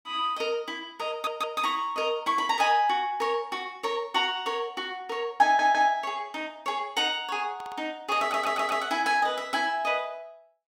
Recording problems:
audio stuttering; 4 times, first at 1 s

